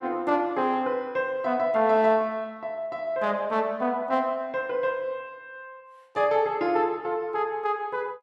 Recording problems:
none

